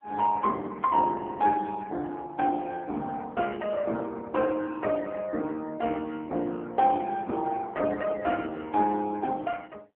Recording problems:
telephone audio; 240 Hz to 2.3 kHz, AMR-NB

